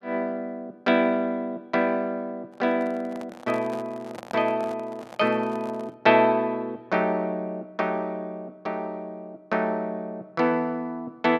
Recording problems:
microphone handling noise; from 2.5 to 6 s; peak -7 dB vs average level

